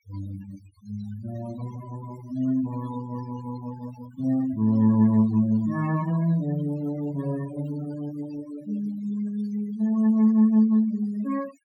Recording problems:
denoising artefacts; signal-to-artefact ratio 17 dB

